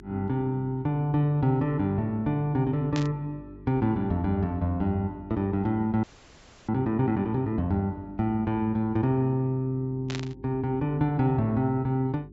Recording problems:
treble cut off; nothing above 7.7 kHz
hum; 50 Hz, harmonics up to 400 Hz, SNR 20 dB
static burst; at 3 s and at 10 s; peak -5 dB vs average level
frozen audio; at 6 s for 0.5 s

